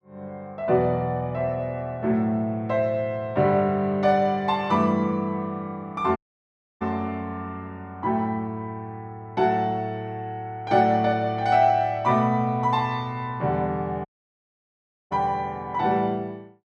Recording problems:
audio cutting out; at 6 s for 0.5 s and at 14 s for 1 s

